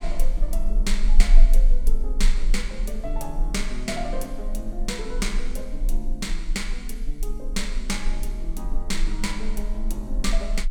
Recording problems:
low-frequency rumble; below 32 Hz, strongest tone 20 Hz, SNR -4 dB

